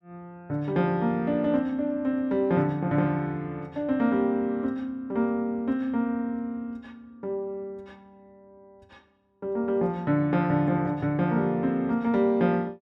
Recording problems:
none

